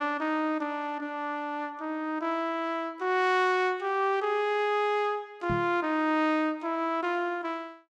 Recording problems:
knock on the microphone; at 5.5 s; peak -1 dB vs average level

